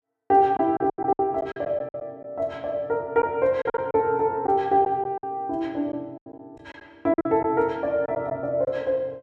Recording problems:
lost packets; 10% of the sound replaced, filled with silence

